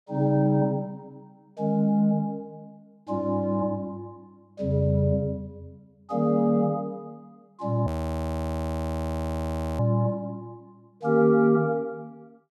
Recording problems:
frozen audio; at 8 s for 2 s

